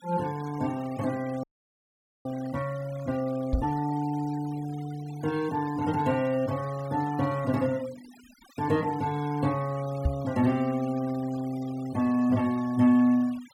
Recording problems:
denoising artefacts; signal-to-artefact ratio 20 dB
frozen audio; at 1.5 s for 1 s
microphone bump; at 3.5 s and at 10 s; peak +5 dB vs average level

